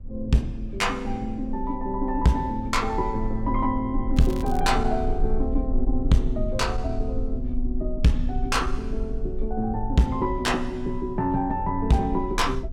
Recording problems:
distortion; soft clipping, signal-to-distortion ratio 12 dB
low-frequency rumble; below 44 Hz, strongest tone 20 Hz, SNR 7 dB
crackling; at 4 s; loose cable, SNR 21 dB

